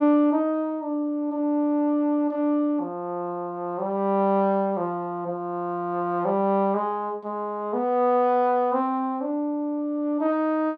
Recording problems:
none

